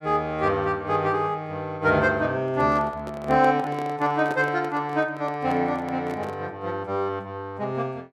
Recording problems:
handling noise; from 2.5 to 6.5 s; peak -5 dB vs average level

